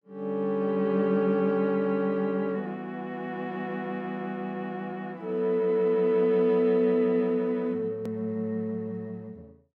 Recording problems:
hard cut with a click; at 8 s

